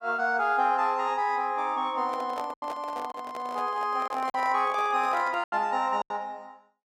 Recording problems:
packet loss; 5% of the sound replaced, filled with silence
microphone handling noise; from 2 to 5.5 s; peak -5 dB vs average level

